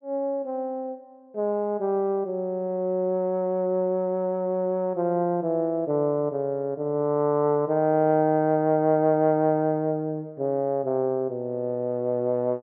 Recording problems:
none

